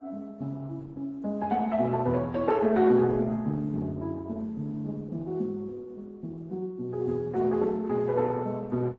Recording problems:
lossy codec; Opus, then AAC, log-spectral distance 2 dB, nothing above 7.6 kHz

